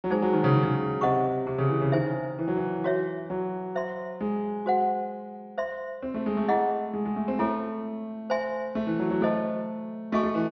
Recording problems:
low-pass filter; nothing above 6.2 kHz

